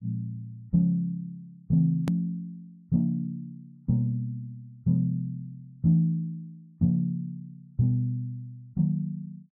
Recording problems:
edit click; at 2 s

